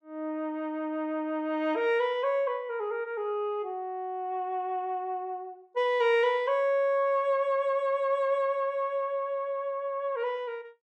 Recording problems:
none

